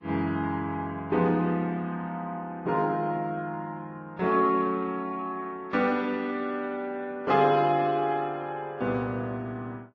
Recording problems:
lossy codec; Vorbis, log-spectral distance 2 dB

